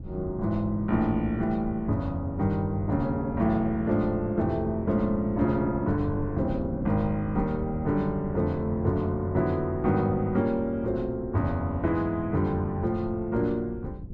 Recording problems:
wind noise; below 180 Hz, SNR 13 dB

